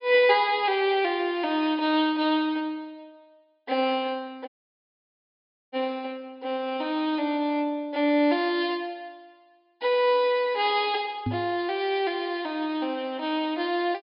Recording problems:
treble cut off; nothing above 5.5 kHz
dropout; at 4.5 s for 1 s
knock on the microphone; at 11 s; peak 0 dB vs average level

